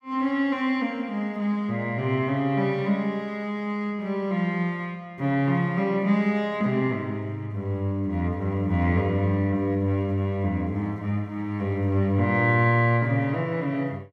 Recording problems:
none

